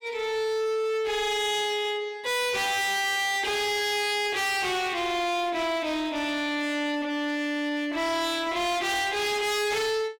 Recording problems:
distorted audio; hard clipping, signal-to-distortion ratio 6 dB

